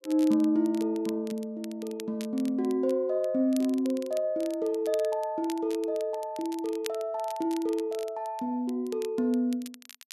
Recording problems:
crackling; vinyl, SNR 19 dB

